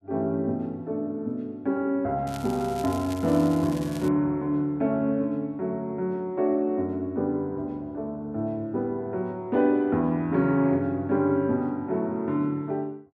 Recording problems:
crackle; from 2.5 to 4 s; loose cable, SNR 18 dB

